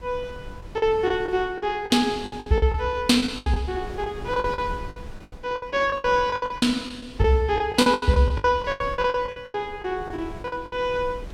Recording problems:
wind noise; below 220 Hz, SNR 18 dB
lost packets; 17% of the sound replaced, filled with the last packet

